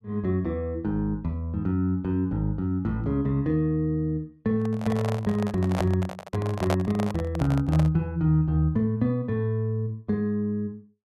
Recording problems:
microphone handling noise; from 4.5 to 8 s; peak +2 dB vs average level

